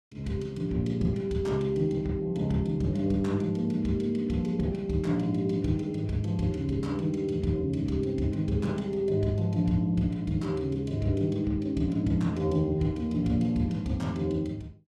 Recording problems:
none

